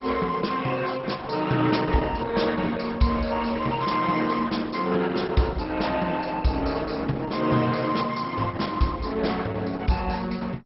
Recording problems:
codec artefacts; Opus, then MP2, log-spectral distance 5 dB, nothing above 5.5 kHz

